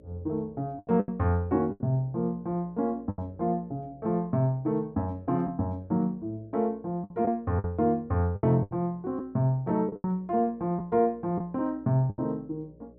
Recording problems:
hum; 60 Hz, harmonics up to 600 Hz, SNR 27 dB
packet loss; 7% of the sound replaced, filled with the last packet

